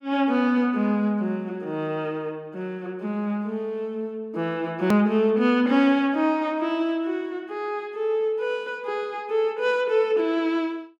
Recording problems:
hard cut with a click; at 5 s

